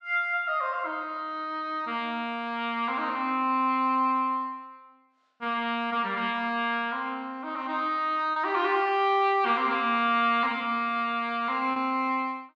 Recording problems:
lost packets; 0.7% of the sound replaced, filled with repeated pitch periods

